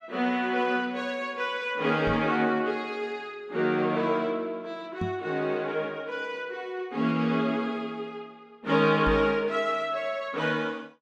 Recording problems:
microphone thump; at 2 s, at 5 s and at 9 s; peak 0 dB vs average level

